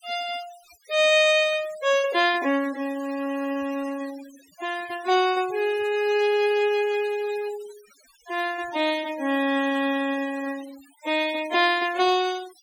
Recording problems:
denoising artefacts; signal-to-artefact ratio 17 dB

